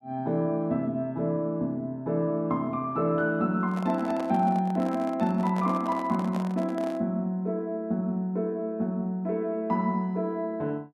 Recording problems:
handling noise; from 3.5 to 7 s; peak -6 dB vs average level

